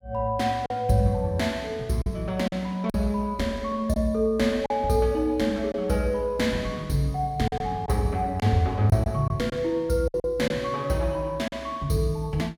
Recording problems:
packet loss; 5% of the sound replaced, filled with silence

